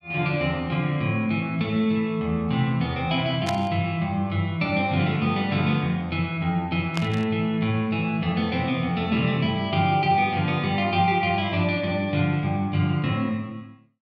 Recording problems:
burst of static; at 3.5 s and at 7 s; peak -2 dB vs average level

